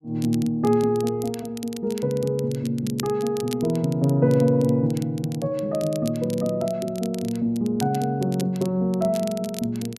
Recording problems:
crackle; vinyl, SNR 17 dB

